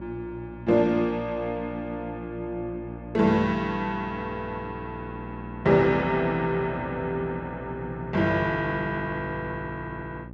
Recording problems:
hum; 60 Hz, harmonics up to 1.1 kHz, SNR 13 dB

